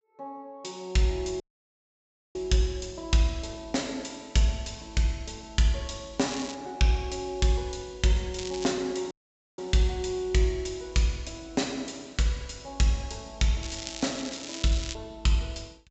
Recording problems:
low-pass filter; nothing above 7.7 kHz
dropout; at 1.5 s for 1 s and at 9 s
crackling; at 6.5 s, at 8.5 s and from 14 to 15 s; loose cable, SNR 10 dB

